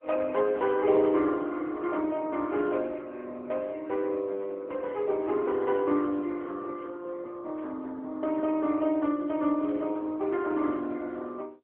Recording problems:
phone line; 220 Hz to 3 kHz, AMR-NB

